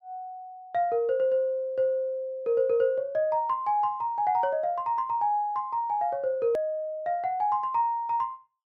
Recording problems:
click at an edit; at 6.5 s

